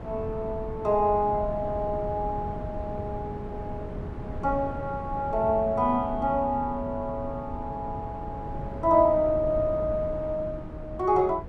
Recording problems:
wind on the microphone; below 280 Hz, SNR 10 dB

